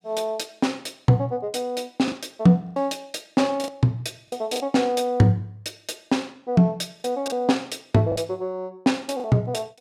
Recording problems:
packet loss; 5% of the sound replaced, filled with the last packet

